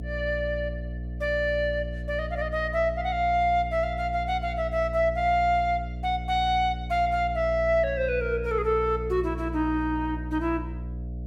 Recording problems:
mains hum; 60 Hz, harmonics up to 660 Hz, SNR 9 dB

